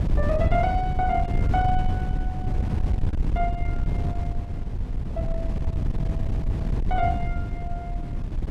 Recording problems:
wind noise; below 110 Hz, SNR -2 dB

